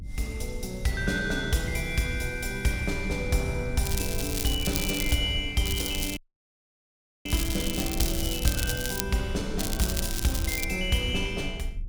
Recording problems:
low-frequency rumble; below 70 Hz, SNR 9 dB
crackling; from 4 to 5 s, from 5.5 to 9 s and from 9.5 to 11 s; loose cable, SNR 4 dB
audio cutting out; at 6 s for 1 s

